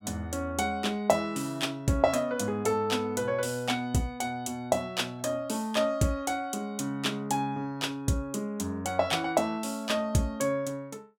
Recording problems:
none

